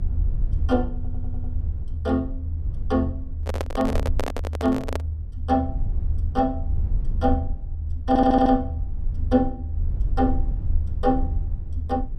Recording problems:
low-frequency rumble; below 78 Hz, SNR 4 dB
audio stuttering; at 1 s and at 8 s
handling noise; from 3.5 to 5 s; peak +1 dB vs average level

